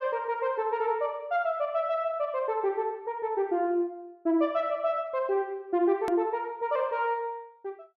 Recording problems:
edit click; at 6 s

